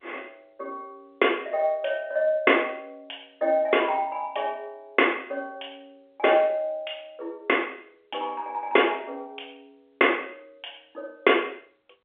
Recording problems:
telephone audio; 300 Hz to 3.2 kHz, G.711

